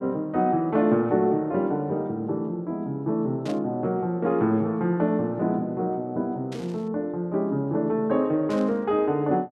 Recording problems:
static burst; at 3.5 s, at 6.5 s and at 8.5 s; peak -12 dB vs average level

